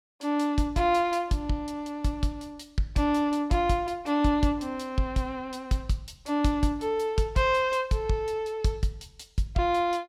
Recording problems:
none

